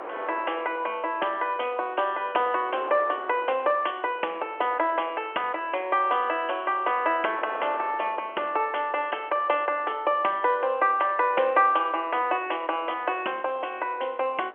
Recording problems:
phone line; 300 Hz to 3.2 kHz, G.711
wind noise; below 1.2 kHz, SNR 19 dB

